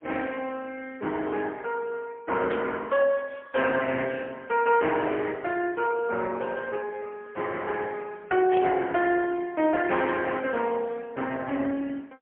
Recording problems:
phone line; 220 Hz to 3.2 kHz, AMR-NB, then MP3
static burst; at 2.5 s and at 8.5 s; peak -6 dB vs average level

